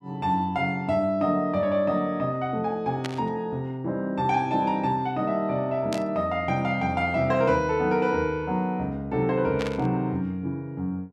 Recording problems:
burst of static; at 3 s, at 6 s and at 9.5 s; peak -4 dB vs average level

